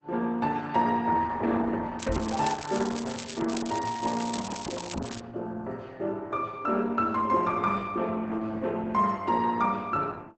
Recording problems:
lossy codec; Opus, log-spectral distance 6 dB, nothing above 8 kHz
crackling; from 2 to 5 s; loose cable, SNR 10 dB
knock on the microphone; at 2 s and at 5 s; peak -2 dB vs average level

